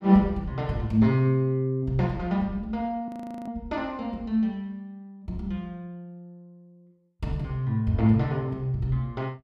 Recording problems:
frozen audio; at 3 s

